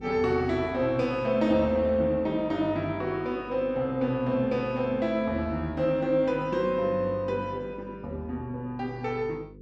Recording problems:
hum; 50 Hz, harmonics up to 500 Hz, SNR 20 dB

